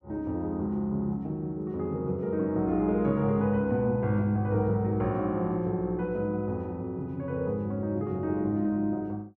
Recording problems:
none

